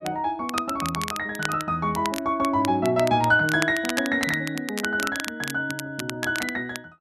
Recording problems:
crackling; vinyl, SNR 10 dB

